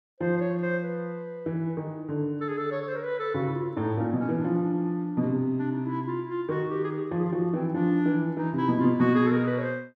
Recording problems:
none

